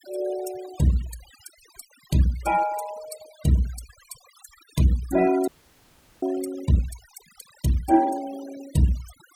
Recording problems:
noise reduction artefacts; signal-to-artefact ratio 18 dB
audio freezing; at 5.5 s for 0.5 s

